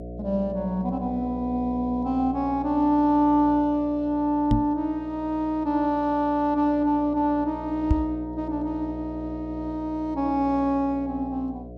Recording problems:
hum; 60 Hz, harmonics up to 720 Hz, SNR 14 dB
knock on the microphone; at 4.5 s and at 8 s; peak +7 dB vs average level

